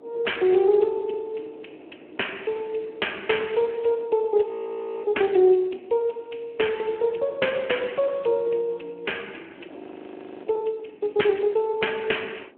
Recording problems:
telephone audio; 280 Hz to 3.3 kHz, Speex
wind noise; below 540 Hz, SNR 23 dB
audio freezing; at 4.5 s for 0.5 s and at 10 s for 0.5 s

